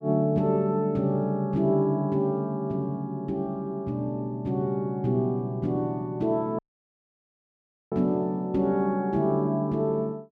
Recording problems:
dropout; at 6.5 s for 1.5 s

